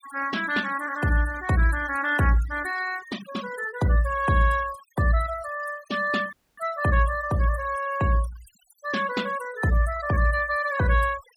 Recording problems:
noise reduction artefacts; signal-to-artefact ratio 17 dB
audio cutting out; at 6.5 s

